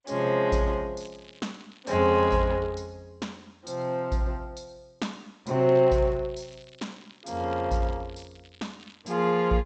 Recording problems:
codec artefacts; G.722, log-spectral distance 7 dB, nothing above 8 kHz
crackle; from 1 to 2.5 s and from 5.5 to 9 s; loose cable, SNR 27 dB

